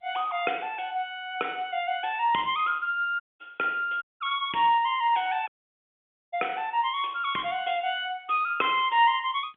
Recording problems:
phone line; 240 Hz to 3.6 kHz, G.711
dropout; at 3 s, at 4 s and at 5.5 s for 1 s

